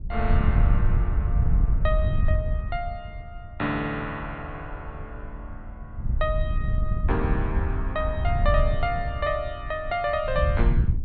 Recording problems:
treble cut off; nothing above 4.4 kHz
wind noise; below 88 Hz, SNR -4 dB

